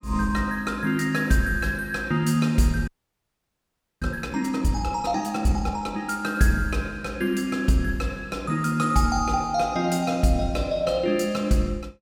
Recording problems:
audio freezing; at 3 s for 1 s

